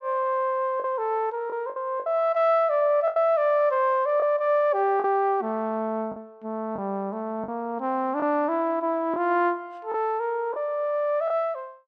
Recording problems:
packet loss; 4% of the sound replaced, filled with the last packet

